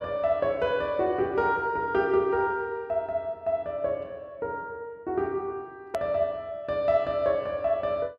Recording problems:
edit click; at 6 s

